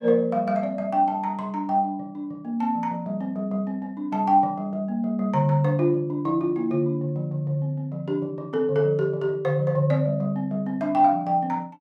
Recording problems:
none

